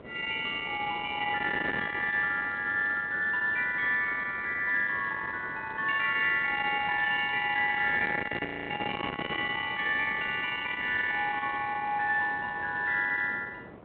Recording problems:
phone line; 150 Hz to 3.9 kHz, G.726
distortion; soft clipping, signal-to-distortion ratio 14 dB
wind on the microphone; below 2 kHz, SNR 13 dB
frozen audio; at 8.5 s
crackling; from 10 to 12 s; loose cable, SNR 27 dB

